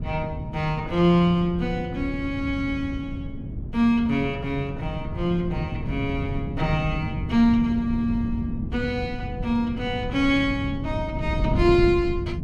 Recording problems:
wind on the microphone; below 190 Hz, SNR 7 dB

